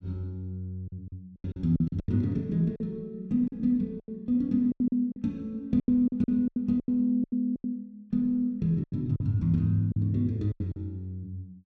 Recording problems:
lost packets; 13% of the sound replaced, filled with silence

